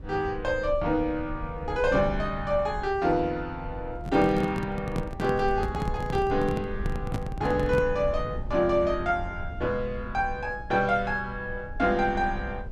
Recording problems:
rumble; below 90 Hz, SNR 11 dB
microphone handling noise; from 4 to 8 s; peak 0 dB vs average level

